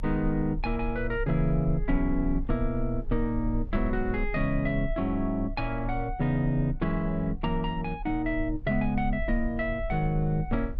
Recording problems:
rumble; below 38 Hz, strongest tone 28 Hz, SNR 8 dB

